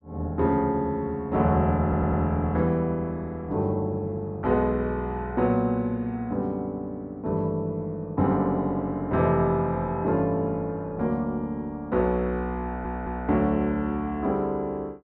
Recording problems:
stutter; at 2 s and at 13 s

